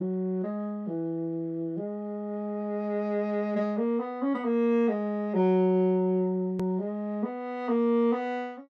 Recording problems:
hard cut with a click; at 6.5 s

